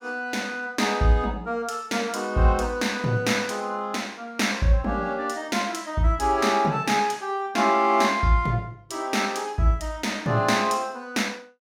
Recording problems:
none

